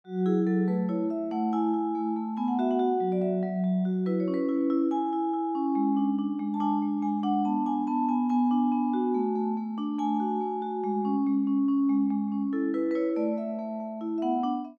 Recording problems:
none

